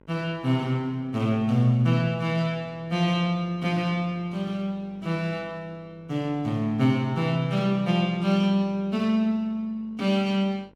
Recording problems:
hum; 50 Hz, harmonics up to 1.6 kHz, SNR 28 dB

